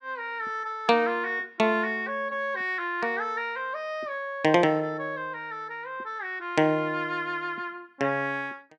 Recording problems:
none

